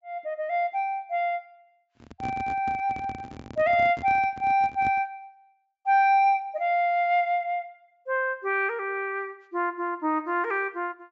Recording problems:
treble cut off; nothing above 8 kHz
handling noise; from 2 to 5 s; peak -7 dB vs average level

